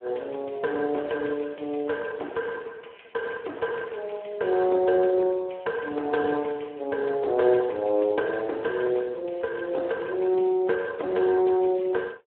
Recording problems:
telephone audio; 320 Hz to 3 kHz, Speex

